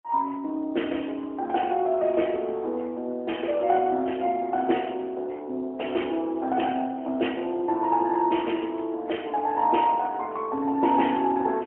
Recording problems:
telephone audio; 240 Hz to 3.3 kHz, AMR-NB, then MP3

